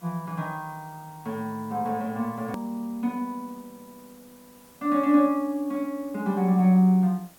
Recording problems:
background hiss; slope -3 dB per octave, SNR 27 dB
click at an edit; at 2.5 s

